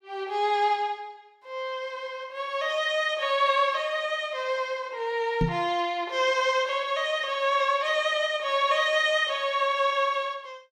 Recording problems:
microphone thump; at 5.5 s; peak +3 dB vs average level

